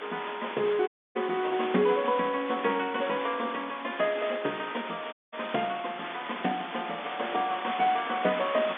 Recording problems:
phone line; 190 Hz to 3.6 kHz, G.711
hiss; SNR 9 dB
audio cutting out; at 1 s and at 5 s

